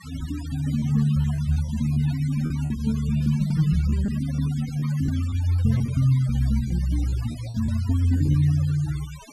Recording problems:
noise reduction artefacts; signal-to-artefact ratio 19 dB
packet loss; 7% of the sound replaced, filled with repeated pitch periods

